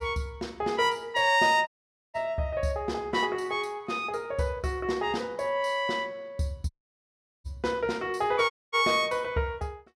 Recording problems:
audio cutting out; at 1.5 s, at 6.5 s for 0.5 s and at 8.5 s

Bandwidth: 16 kHz